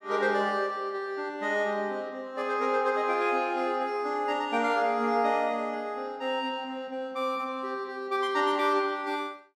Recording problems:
none

